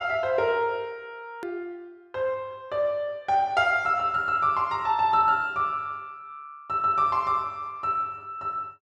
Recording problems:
edit click; at 1.5 s

